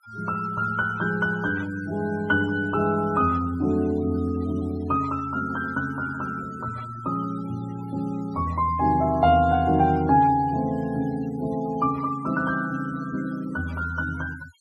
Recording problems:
denoising artefacts; signal-to-artefact ratio 23 dB

